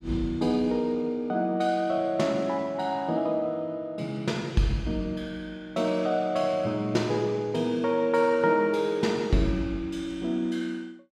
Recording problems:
none

